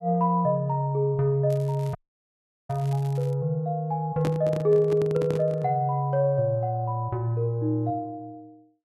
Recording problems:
crackle; from 1.5 to 3.5 s; loose cable, SNR 27 dB
dropout; at 2 s for 0.5 s
handling noise; from 4 to 5.5 s; peak -2 dB vs average level

